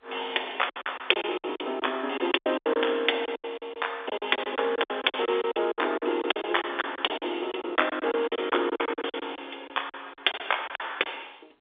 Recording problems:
telephone audio; 320 Hz to 3.6 kHz, G.711
packet loss; 17% of the sound replaced, filled with silence

